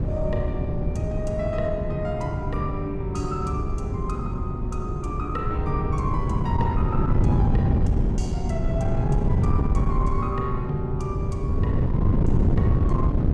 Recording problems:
distortion; soft clipping, signal-to-distortion ratio 12 dB
wind noise; below 160 Hz, SNR -5 dB

